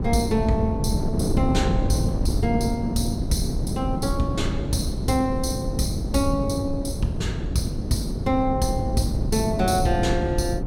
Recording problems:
wind on the microphone; below 230 Hz, SNR 1 dB

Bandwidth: 17 kHz